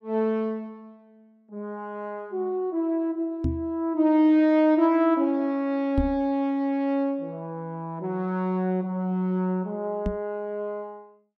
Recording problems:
microphone thump; at 3.5 s, at 6 s and at 10 s; peak +3 dB vs average level

